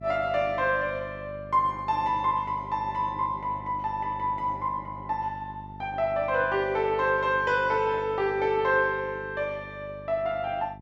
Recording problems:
hum; 50 Hz, harmonics up to 700 Hz, SNR 17 dB

